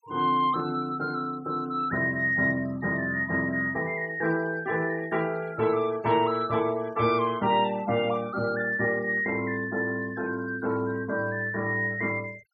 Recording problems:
denoising artefacts; signal-to-artefact ratio 23 dB

